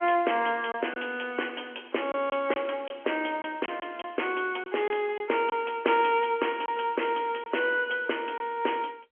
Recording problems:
telephone audio; 280 Hz to 3.2 kHz, G.711
packet loss; 4% of the sound replaced, filled with silence

